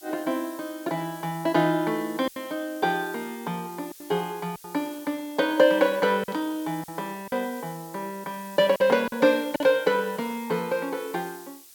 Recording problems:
hiss; SNR 19 dB
packet loss; 4% of the sound replaced, filled with silence

